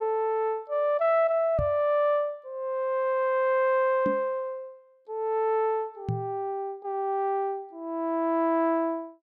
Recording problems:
knock on the microphone; at 1.5 s, at 4 s and at 6 s; peak 0 dB vs average level

